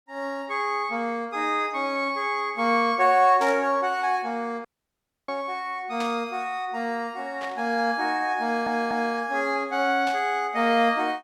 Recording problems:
static burst; 4 times, first at 3.5 s; peak -8 dB vs average level
audio cutting out; at 4.5 s for 0.5 s
audio stuttering; at 8.5 s

